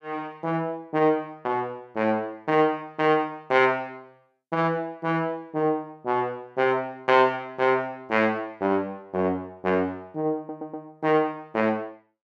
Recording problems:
stutter; at 10 s

